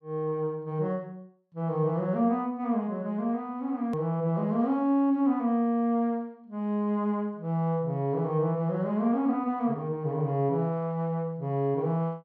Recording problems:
click at an edit; at 4 s

